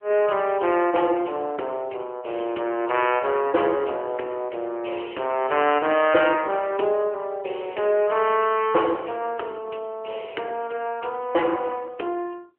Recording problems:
phone line; 280 Hz to 3.2 kHz, AMR-NB

